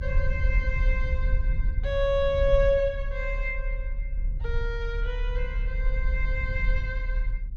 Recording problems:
treble missing; nothing above 8 kHz
low-frequency rumble; below 52 Hz, strongest tone 36 Hz, SNR 0 dB

